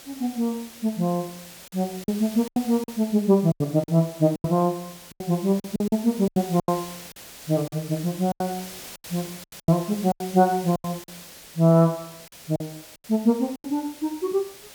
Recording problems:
background hiss; slope -1 dB per octave, SNR 17 dB
lost packets; 10% of the sound replaced, filled with silence

